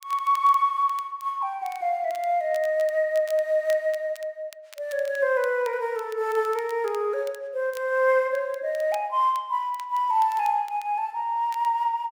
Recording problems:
crackle; vinyl, SNR 24 dB

